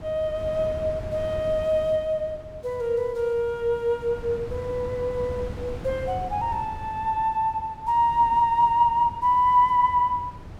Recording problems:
wind noise; below 290 Hz, SNR 15 dB

